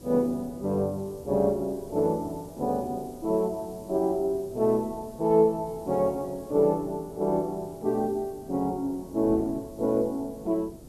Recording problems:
hiss; slope +4 dB per octave, SNR 27 dB
wind on the microphone; below 390 Hz, SNR 19 dB

